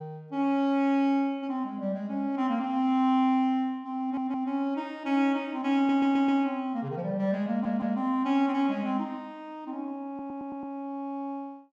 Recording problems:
audio stuttering; 4 times, first at 4 s

